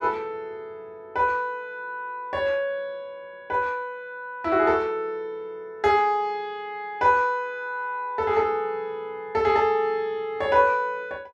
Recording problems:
none

